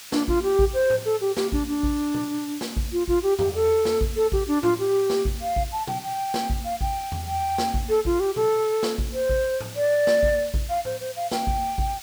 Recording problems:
hiss; slope +3 dB per octave, SNR 15 dB

